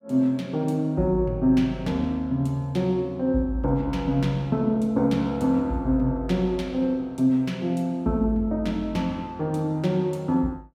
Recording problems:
none

